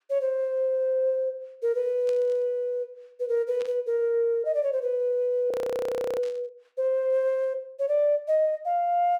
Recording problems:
static burst; at 2 s, at 3.5 s and at 6 s; peak -14 dB vs average level
frozen audio; at 5.5 s for 0.5 s

